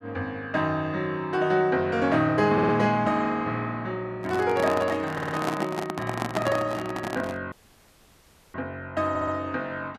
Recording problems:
audio stuttering; at 2.5 s, at 5 s and at 9 s
microphone handling noise; from 4 to 7.5 s; peak +2 dB vs average level
audio cutting out; at 7.5 s for 1 s

